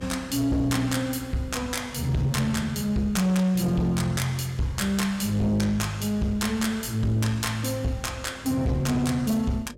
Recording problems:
distorted audio; soft clipping, signal-to-distortion ratio 11 dB
mains hum; 50 Hz, harmonics up to 600 Hz, SNR 25 dB

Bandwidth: 16 kHz